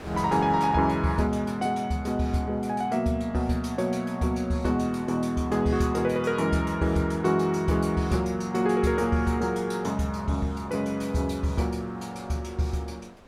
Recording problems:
wind on the microphone; below 1.1 kHz, SNR 24 dB

